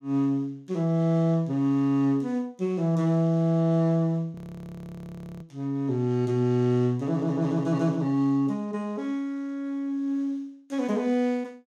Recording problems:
audio freezing; at 4.5 s for 1 s

